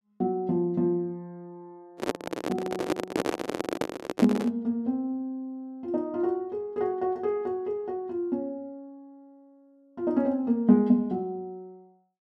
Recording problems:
microphone handling noise; from 2 to 4.5 s; peak +4 dB vs average level

